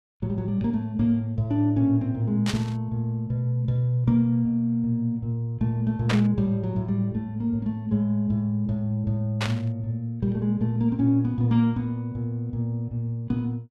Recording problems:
burst of static; at 2.5 s, at 6 s and at 9.5 s; peak +2 dB vs average level

